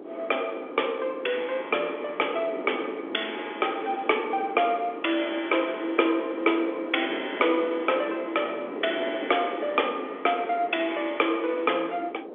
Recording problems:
telephone audio; 280 Hz to 3.5 kHz, G.711
wind on the microphone; below 530 Hz, SNR 11 dB

